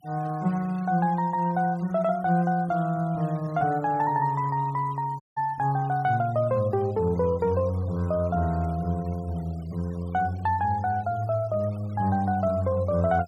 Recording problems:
noise reduction artefacts; signal-to-artefact ratio 25 dB
dropout; at 5 s

